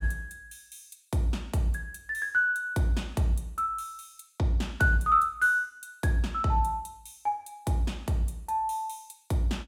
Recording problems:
none

